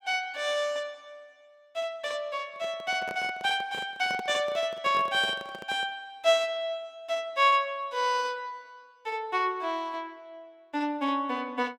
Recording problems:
microphone handling noise; from 2.5 to 6 s; peak -7 dB vs average level

